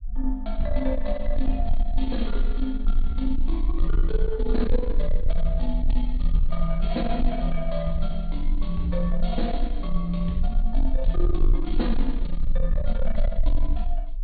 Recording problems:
low-pass filter; nothing above 4.4 kHz
distorted audio; soft clipping, signal-to-distortion ratio 12 dB
rumble; below 34 Hz, strongest tone 18 Hz, SNR -1 dB

